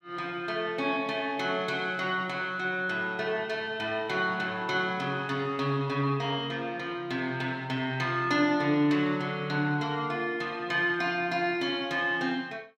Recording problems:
none

